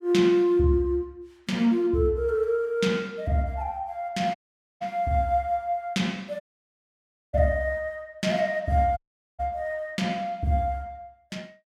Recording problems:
dropout; at 4.5 s, at 6.5 s for 1 s and at 9 s

